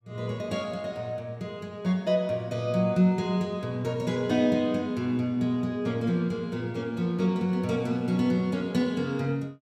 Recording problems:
none

